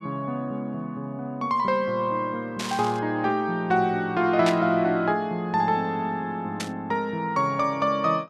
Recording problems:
burst of static; at 2.5 s, at 4.5 s and at 6.5 s; peak 0 dB vs average level

